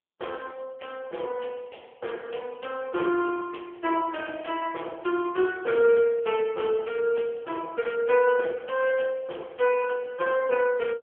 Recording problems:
telephone audio; 320 Hz to 3.3 kHz, AMR-NB

